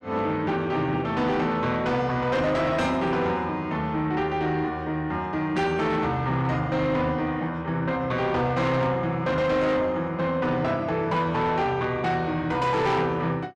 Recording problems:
distortion; soft clipping, signal-to-distortion ratio 10 dB

